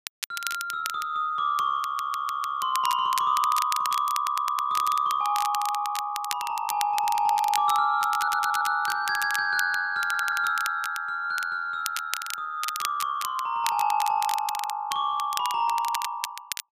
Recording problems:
crackle; vinyl, SNR 10 dB
stutter; 4 times, first at 2 s

